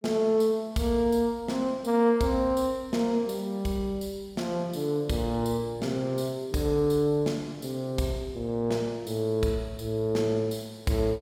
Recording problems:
none

